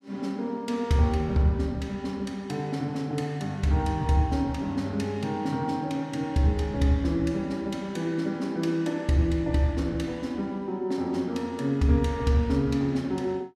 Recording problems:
none

